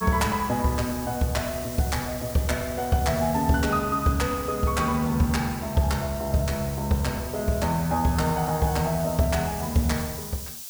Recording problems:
hiss; SNR 12 dB

